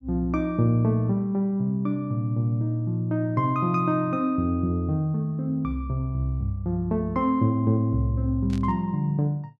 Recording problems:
static burst; at 8.5 s; peak -14 dB vs average level

